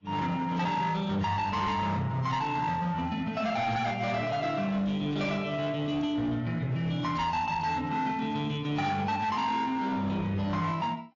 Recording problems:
codec artefacts; AAC, log-spectral distance 2 dB, nothing above 7.1 kHz
distortion; hard clipping, uneven, signal-to-distortion ratio 10 dB

